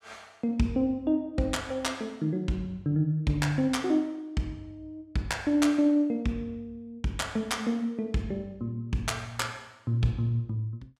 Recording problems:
none

